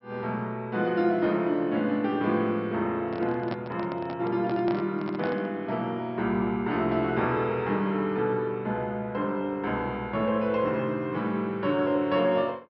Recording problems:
treble cut off; nothing above 5.5 kHz
handling noise; from 3 to 5.5 s; peak -3 dB vs average level

